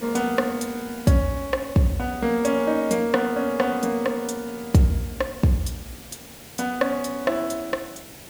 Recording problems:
background hiss; SNR 17 dB

